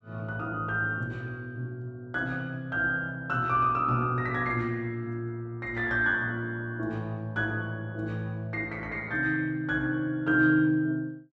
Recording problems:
none

